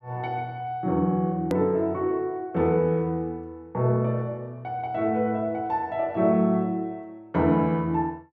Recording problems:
hard cut with a click; at 1.5 s

